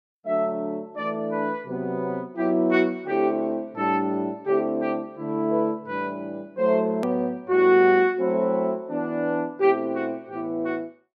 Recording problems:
click at an edit; at 7 s

